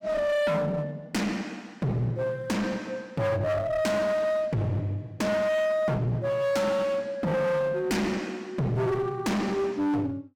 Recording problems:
distortion; hard clipping, uneven, signal-to-distortion ratio 7 dB

